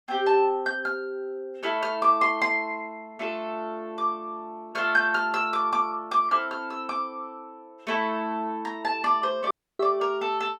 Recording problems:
audio cutting out; at 9.5 s

